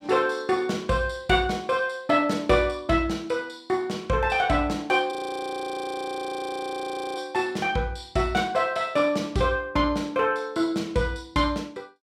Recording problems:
audio freezing; at 5 s for 2 s

